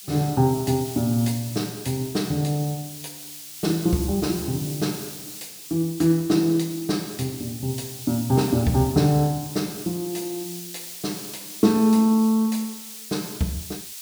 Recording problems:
background hiss; slope +6 dB per octave, SNR 12 dB

